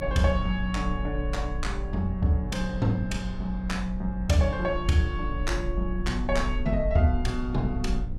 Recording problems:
hum; 60 Hz, harmonics up to 780 Hz, SNR 12 dB
rumble; below 54 Hz, SNR 6 dB

